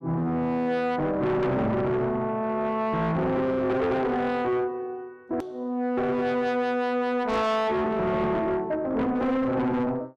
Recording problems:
distortion; soft clipping, signal-to-distortion ratio 7 dB
click at an edit; at 5.5 s

